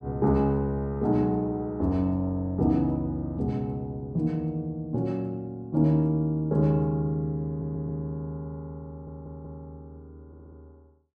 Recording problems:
stutter; at 7.5 s, at 9 s and at 10 s

